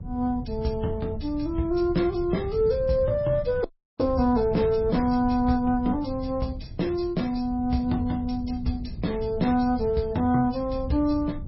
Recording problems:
lossy codec; MP3, log-spectral distance 2 dB, nothing above 5.5 kHz
wind on the microphone; below 120 Hz, SNR 11 dB
audio cutting out; at 3.5 s

